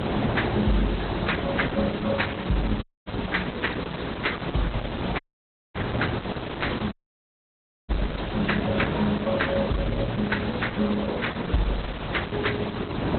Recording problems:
lossy codec; Opus, log-spectral distance 15 dB, nothing above 4.1 kHz
hum; 60 Hz, harmonics up to 420 Hz, SNR 10 dB
hiss; SNR 5 dB
wind noise; below 630 Hz, SNR 6 dB
dropout; at 3 s, at 5 s for 0.5 s and at 7 s for 1 s

